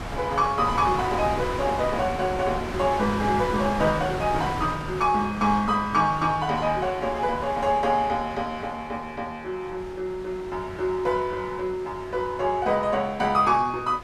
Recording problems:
wind on the microphone; below 1.4 kHz, SNR 10 dB

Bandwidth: 14 kHz